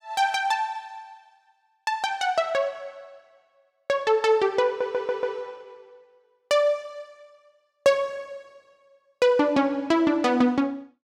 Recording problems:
stutter; at 4.5 s

